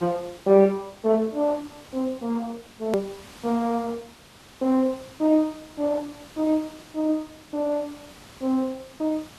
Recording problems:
codec artefacts; MP3, then Opus, log-spectral distance 2 dB, nothing above 13.1 kHz
hiss; slope -2 dB per octave, SNR 22 dB
hard cut with a click; at 3 s

